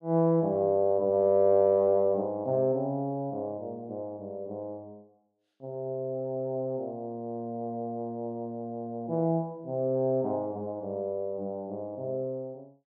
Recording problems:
none

